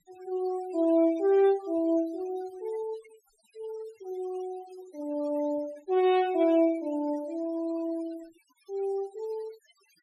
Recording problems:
noise reduction artefacts; signal-to-artefact ratio 23 dB

